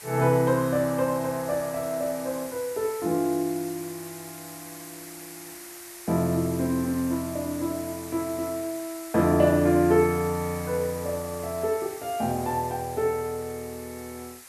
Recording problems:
background hiss; SNR 15 dB

